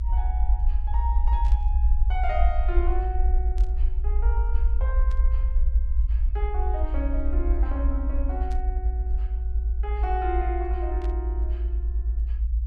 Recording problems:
rumble; below 58 Hz, SNR -9 dB
burst of static; 5 times, first at 1.5 s; peak -10 dB vs average level

